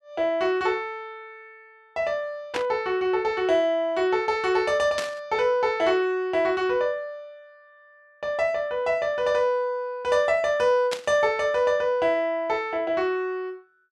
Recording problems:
static burst; at 2.5 s, at 5 s and at 11 s; peak -2 dB vs average level

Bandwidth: 12.5 kHz